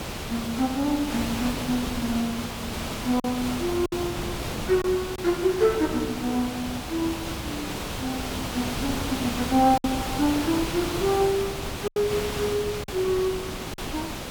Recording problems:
hiss; slope -4 dB per octave, SNR 5 dB
wind on the microphone; below 280 Hz, SNR 18 dB
lost packets; 3% of the sound replaced, filled with silence

